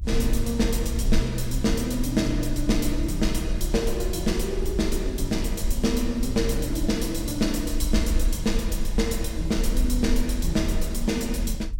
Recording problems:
low-frequency rumble; below 50 Hz, SNR 4 dB

